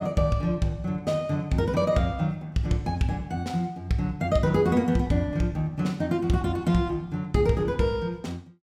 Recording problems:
none

